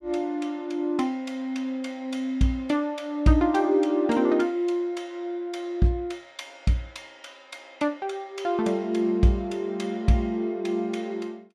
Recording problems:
none

